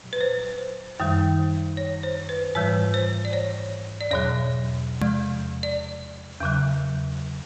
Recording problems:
codec artefacts; G.722, log-spectral distance 7 dB, nothing above 15.1 kHz
hiss; slope -2 dB per octave, SNR 18 dB
click at an edit; at 5 s

